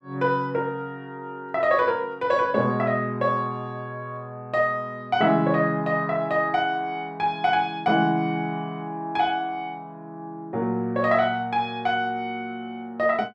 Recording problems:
none

